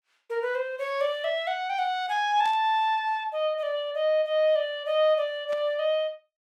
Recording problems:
burst of static; at 2.5 s and at 5.5 s; peak -14 dB vs average level

